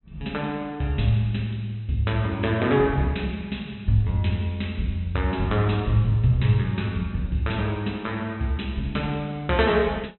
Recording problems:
treble missing; nothing above 4 kHz

